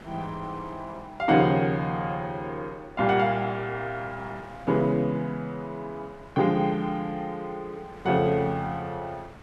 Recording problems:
wind on the microphone; below 1.3 kHz, SNR 22 dB

